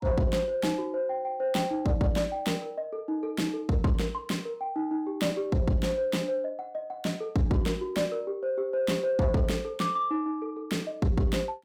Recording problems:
distortion; soft clipping, signal-to-distortion ratio 11 dB

